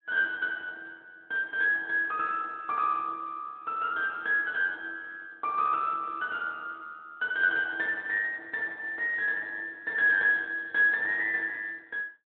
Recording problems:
phone line; 190 Hz to 3.6 kHz, Speex

